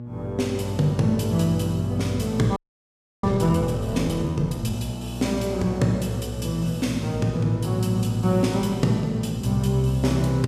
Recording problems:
electrical hum; 60 Hz, harmonics up to 840 Hz, SNR 11 dB
frozen audio; at 2.5 s for 0.5 s

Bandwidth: 15 kHz